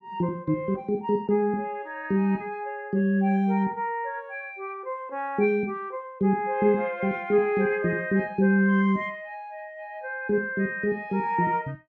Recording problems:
none

